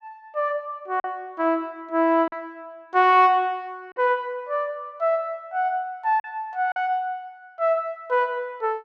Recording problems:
lost packets; 2% of the sound replaced, filled with silence

